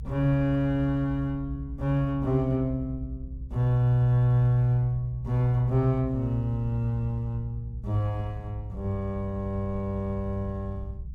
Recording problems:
rumble; below 66 Hz, strongest tone 64 Hz, SNR 12 dB

